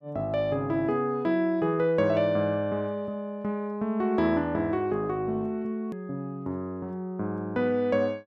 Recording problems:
click at an edit; at 6 s

